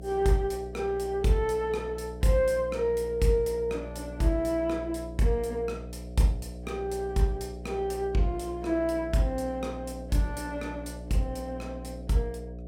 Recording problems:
hum; 60 Hz, harmonics up to 720 Hz, SNR 12 dB

